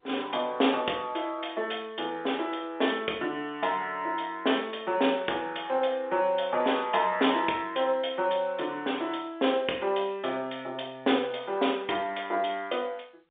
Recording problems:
phone line; 300 Hz to 3.6 kHz, G.711

